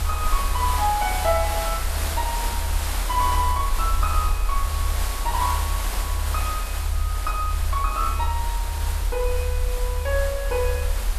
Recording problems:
hiss; SNR 4 dB
low-frequency rumble; below 74 Hz, strongest tone 42 Hz, SNR 0 dB

